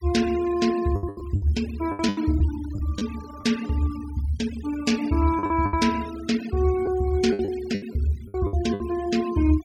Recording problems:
denoising artefacts; signal-to-artefact ratio 17 dB
lost packets; 10% of the sound replaced, filled with the last packet

